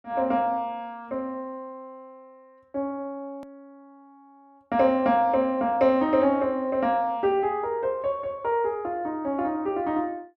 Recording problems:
hard cut with a click; at 3.5 s

